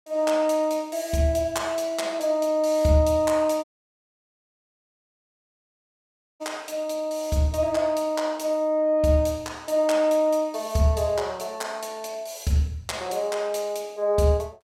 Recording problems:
dropout; at 3.5 s for 3 s

